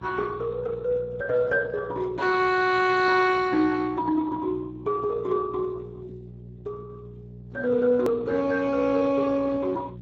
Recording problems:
codec artefacts; Speex, log-spectral distance 3 dB, nothing above 18.9 kHz
electrical hum; 60 Hz, harmonics up to 600 Hz, SNR 17 dB
click at an edit; at 8 s

